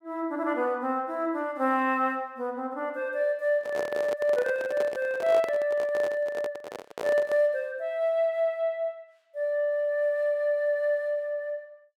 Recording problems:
microphone handling noise; from 3.5 to 7.5 s; peak -2 dB vs average level

